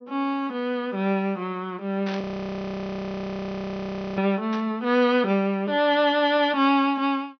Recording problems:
treble missing; nothing above 6.2 kHz
burst of static; at 2 s and at 4.5 s; peak -8 dB vs average level
frozen audio; at 2 s for 2 s

